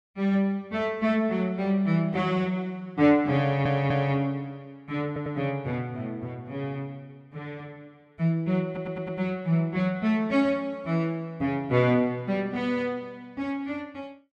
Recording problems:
stutter; at 3.5 s, at 5 s and at 8.5 s

